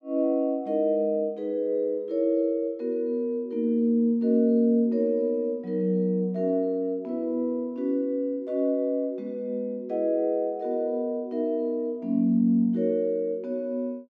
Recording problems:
none

